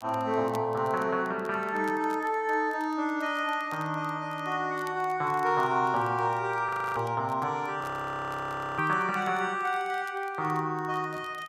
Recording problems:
crackling; vinyl, SNR 27 dB
frozen audio; at 6.5 s and at 8 s for 1 s

